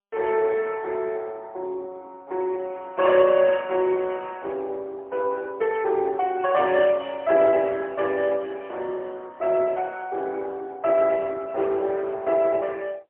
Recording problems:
telephone audio; 300 Hz to 3.3 kHz, AMR-NB, then MP3

